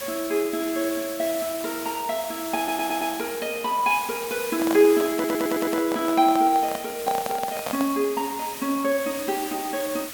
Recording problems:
hiss; slope 0 dB per octave, SNR 10 dB
audio stuttering; at 2.5 s and at 5 s
handling noise; from 4.5 to 8 s; peak -1 dB vs average level

